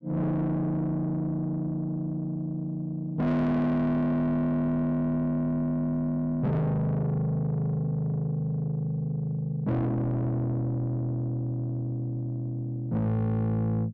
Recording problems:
distortion; soft clipping, signal-to-distortion ratio 6 dB

